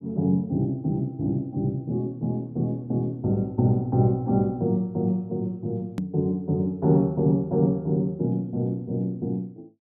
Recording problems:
hard cut with a click; at 6 s

